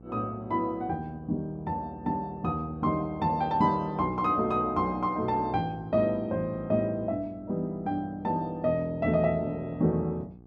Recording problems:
hum; 60 Hz, harmonics up to 900 Hz, SNR 22 dB

